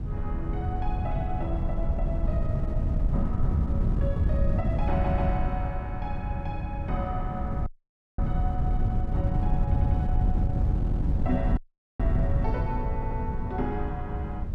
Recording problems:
electrical hum; 50 Hz, harmonics up to 800 Hz, SNR 20 dB
wind on the microphone; below 110 Hz, SNR -6 dB
stutter; 4 times, first at 5 s
audio cutting out; at 7.5 s for 0.5 s and at 12 s

